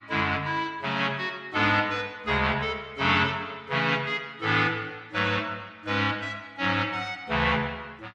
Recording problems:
lossy compression; AAC, log-spectral distance 2 dB

